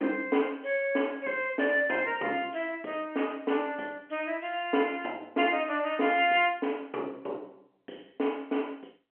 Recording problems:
phone line; 220 Hz to 3.2 kHz, G.711

